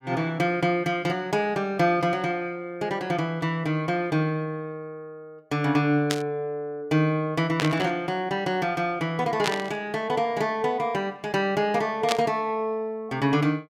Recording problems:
static burst; 4 times, first at 6 s; peak +5 dB vs average level

